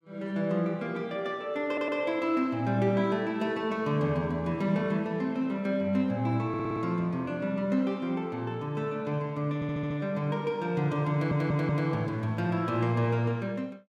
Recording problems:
audio stuttering; 4 times, first at 1.5 s

